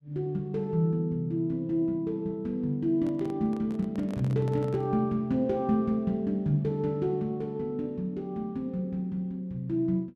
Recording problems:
handling noise; from 3 to 5 s; peak -10 dB vs average level

